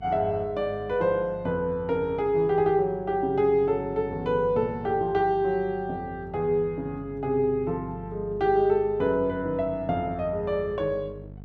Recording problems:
electrical hum; 50 Hz, harmonics up to 650 Hz, SNR 18 dB

